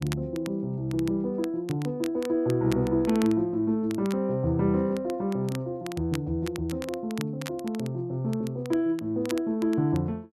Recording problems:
crackling; vinyl, SNR 17 dB

